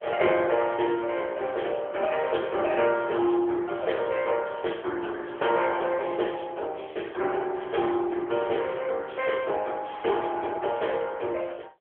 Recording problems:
phone line; 300 Hz to 3.3 kHz, AMR-NB

